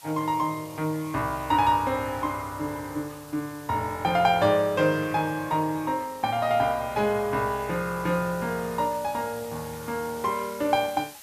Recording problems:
hiss; slope +2 dB per octave, SNR 19 dB

